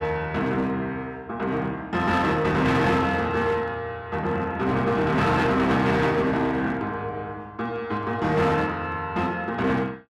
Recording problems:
distortion; hard clipping, uneven, signal-to-distortion ratio 11 dB

